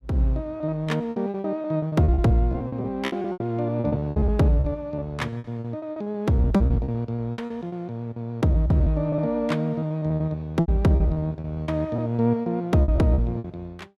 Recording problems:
packet loss; 18% of the sound replaced, filled with repeated pitch periods

